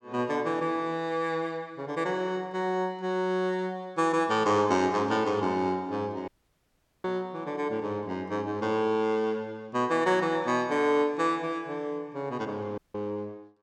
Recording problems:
audio cutting out; at 6.5 s for 1 s and at 13 s

